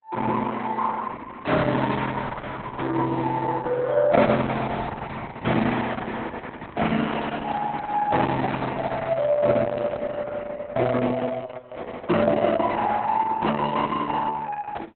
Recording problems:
lossy compression; Opus, log-spectral distance 4 dB, nothing above 3.9 kHz
microphone handling noise; from 6.5 to 10 s; peak +2 dB vs average level

